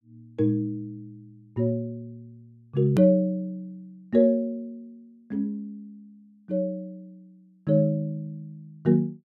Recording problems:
hard cut with a click; at 3 s

